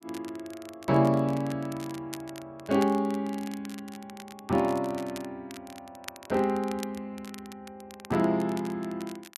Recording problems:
crackling; vinyl, SNR 18 dB

